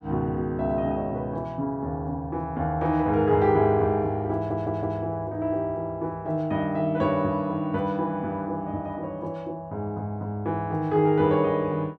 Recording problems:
audio stuttering; at 4.5 s

